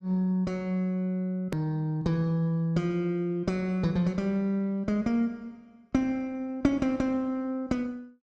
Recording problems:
hard cut with a click; at 1.5 s

